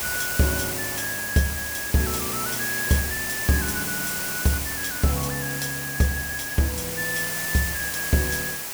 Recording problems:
hiss; slope -1 dB per octave, SNR 1 dB

